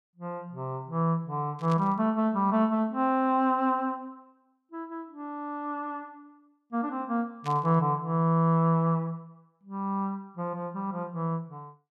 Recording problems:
burst of static; at 1.5 s and at 7.5 s; peak -11 dB vs average level

